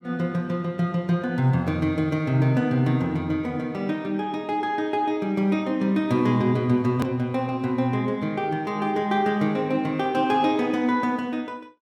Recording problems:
hard cut with a click; at 7 s

